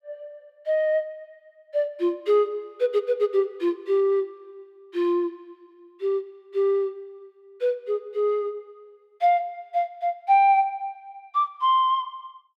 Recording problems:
none

